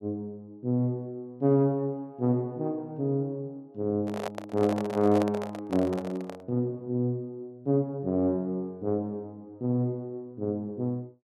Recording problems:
microphone handling noise; from 4 to 6.5 s; peak +1 dB vs average level

